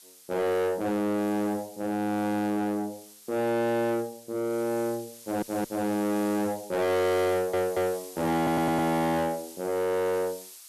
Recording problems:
distorted audio; soft clipping, signal-to-distortion ratio 6 dB
background hiss; slope +4 dB per octave, SNR 18 dB
stutter; at 5 s, at 7.5 s and at 8.5 s

